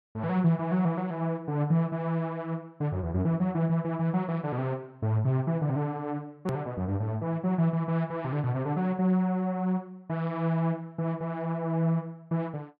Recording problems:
treble missing; nothing above 5.5 kHz
edit click; at 6.5 s

